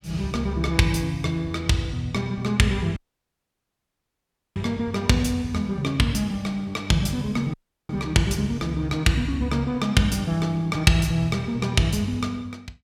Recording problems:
dropout; at 3 s for 1.5 s and at 7.5 s

